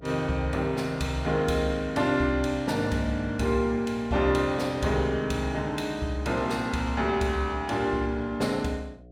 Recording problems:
hum; 60 Hz, harmonics up to 720 Hz, SNR 22 dB

